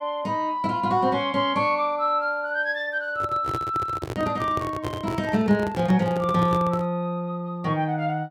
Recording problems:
handling noise; from 3 to 7 s; peak -2 dB vs average level

